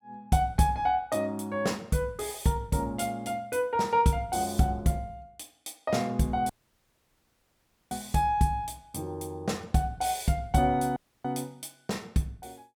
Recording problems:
dropout; at 6.5 s for 1.5 s and at 11 s

